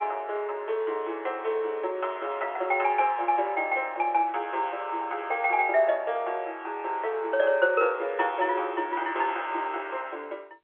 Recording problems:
phone line; 320 Hz to 3.6 kHz, G.711

